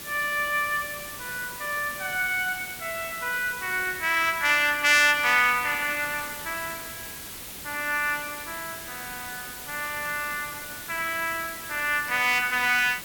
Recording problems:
background hiss; slope -1 dB per octave, SNR 11 dB

